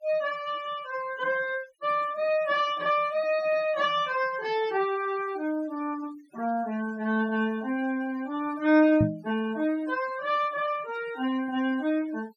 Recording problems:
noise reduction artefacts; signal-to-artefact ratio 20 dB
microphone bump; at 9 s; peak +6 dB vs average level

